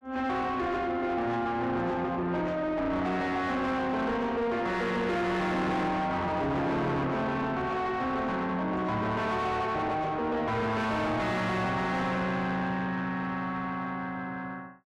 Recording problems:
distortion; soft clipping, signal-to-distortion ratio 6 dB

